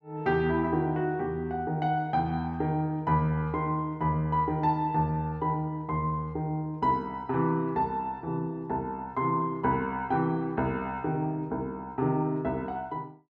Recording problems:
none

